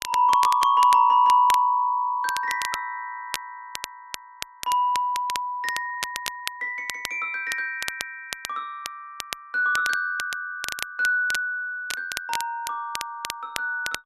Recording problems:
crackling; vinyl, SNR 11 dB

